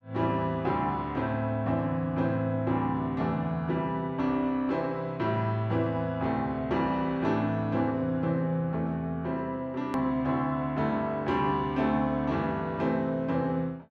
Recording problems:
edit click; at 10 s

